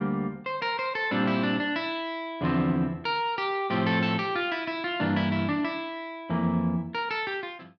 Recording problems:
none

